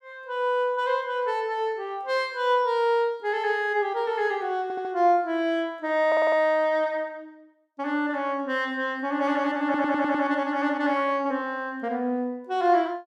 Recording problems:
audio stuttering; at 4.5 s, at 6 s and at 9.5 s

